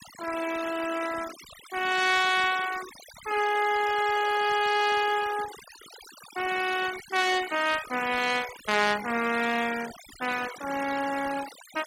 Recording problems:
noise reduction artefacts; signal-to-artefact ratio 12 dB

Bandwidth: 16.5 kHz